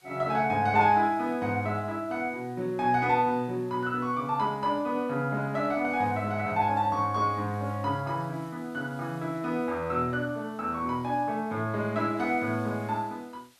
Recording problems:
hiss; slope +1 dB per octave, SNR 30 dB

